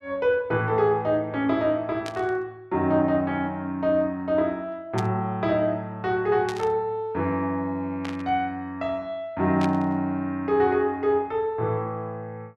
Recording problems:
static burst; 5 times, first at 2 s; peak -5 dB vs average level

